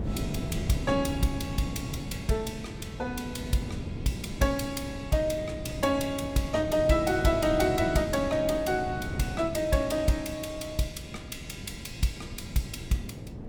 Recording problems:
wind noise; below 260 Hz, SNR 8 dB

